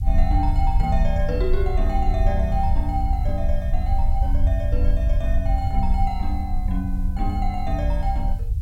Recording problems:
hiss; slope +3 dB per octave, SNR 28 dB
low-frequency rumble; below 68 Hz, SNR -5 dB

